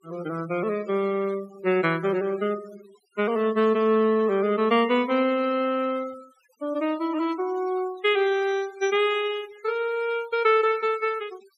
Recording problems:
denoising artefacts; signal-to-artefact ratio 21 dB

